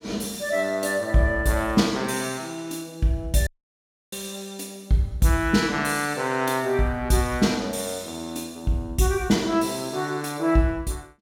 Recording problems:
audio cutting out; at 3.5 s for 0.5 s

